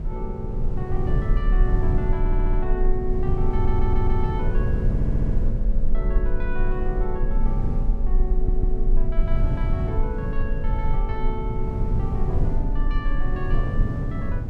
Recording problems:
low-frequency rumble; below 36 Hz, strongest tone 20 Hz, SNR -4 dB
wind on the microphone; below 160 Hz, SNR -3 dB
audio stuttering; 4 times, first at 2 s

